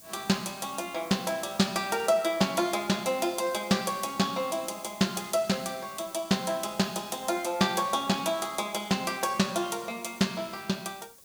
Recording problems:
hiss; SNR 20 dB

